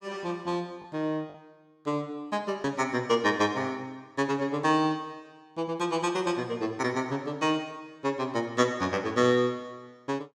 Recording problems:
packet loss; 0.9% of the sound replaced, filled with the last packet

